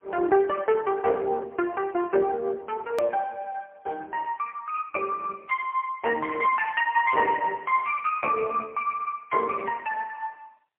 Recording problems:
telephone audio; 320 Hz to 2.5 kHz, AMR-NB, then MP3
hard cut with a click; at 3 s

